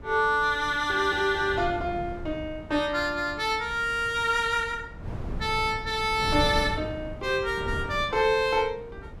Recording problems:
wind on the microphone; below 220 Hz, SNR 13 dB

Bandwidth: 14.5 kHz